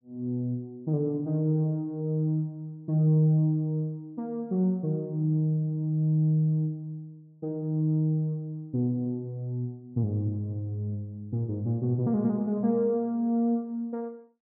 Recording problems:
none

